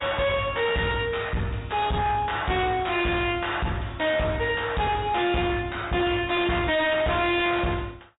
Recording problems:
treble missing; nothing above 3.8 kHz
codec artefacts; MP3, log-spectral distance 4 dB
distortion; hard clipping, uneven, signal-to-distortion ratio 5 dB

